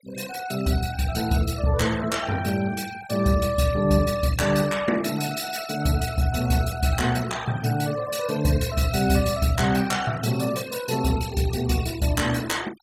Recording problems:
denoising artefacts; signal-to-artefact ratio 15 dB

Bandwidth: 16 kHz